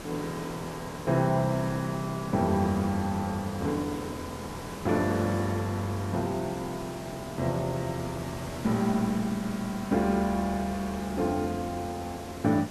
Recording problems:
background hiss; slope -5 dB per octave, SNR 10 dB

